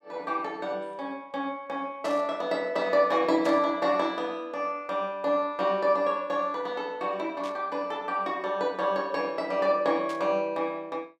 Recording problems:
static burst; 4 times, first at 2 s; peak -9 dB vs average level

